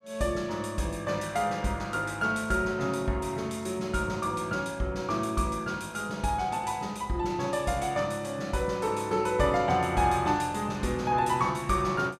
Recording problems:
none

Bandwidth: 15 kHz